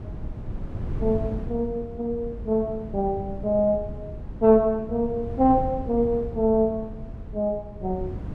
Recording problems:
wind on the microphone; below 150 Hz, SNR 11 dB

